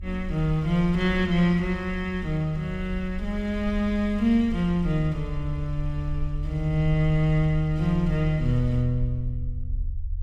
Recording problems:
low-frequency rumble; below 78 Hz, strongest tone 32 Hz, SNR 9 dB

